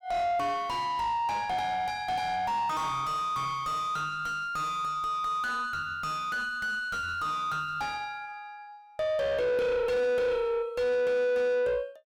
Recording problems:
distorted audio; soft clipping, signal-to-distortion ratio 4 dB

